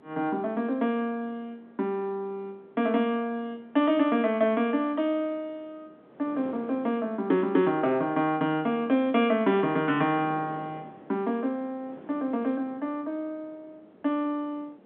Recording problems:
phone line; 170 Hz to 3.6 kHz, G.711
wind noise; below 600 Hz, SNR 22 dB

